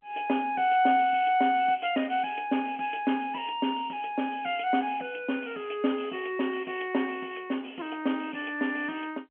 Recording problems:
phone line; 220 Hz to 3.2 kHz, G.711

